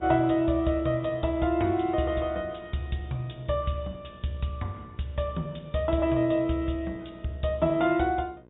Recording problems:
low-pass filter; nothing above 4 kHz
mains hum; 60 Hz, harmonics up to 1.5 kHz, SNR 25 dB

